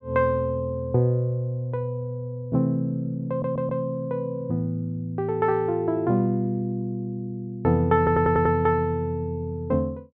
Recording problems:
audio stuttering; at 3.5 s and at 8 s

